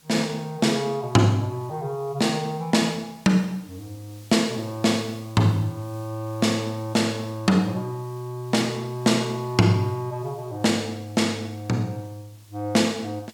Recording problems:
hiss; SNR 27 dB

